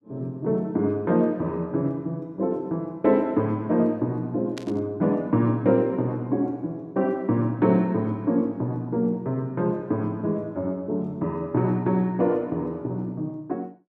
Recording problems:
static burst; at 4.5 s; peak -8 dB vs average level

